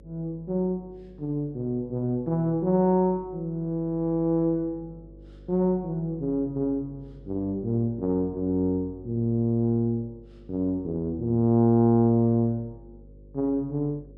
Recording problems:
mains hum; 50 Hz, harmonics up to 550 Hz, SNR 24 dB

